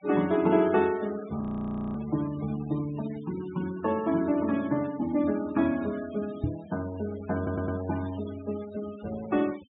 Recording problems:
low-pass filter; nothing above 4 kHz
noise reduction artefacts; signal-to-artefact ratio 18 dB
audio freezing; at 1.5 s for 0.5 s
microphone bump; at 6.5 s; peak +4 dB vs average level
audio stuttering; at 7.5 s

